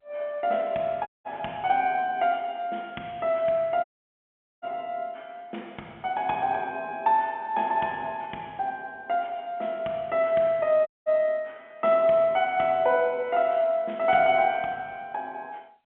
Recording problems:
phone line; 260 Hz to 3.5 kHz, G.711
dropout; at 1 s, at 4 s for 1 s and at 11 s

